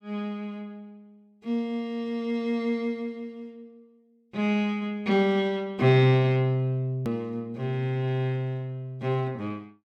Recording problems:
hard cut with a click; at 7 s

